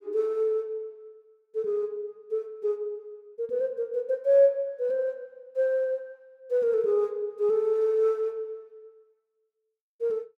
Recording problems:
none

